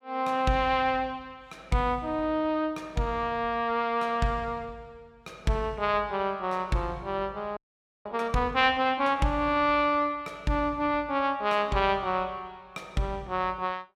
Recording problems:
frozen audio; at 7.5 s

